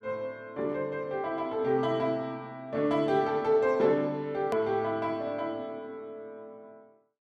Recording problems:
click at an edit; at 4.5 s

